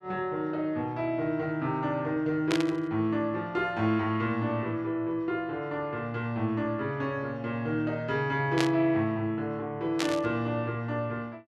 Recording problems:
burst of static; at 2.5 s, at 8.5 s and at 10 s; peak +3 dB vs average level

